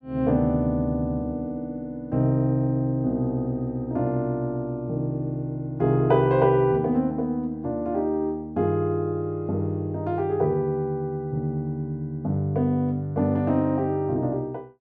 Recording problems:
none

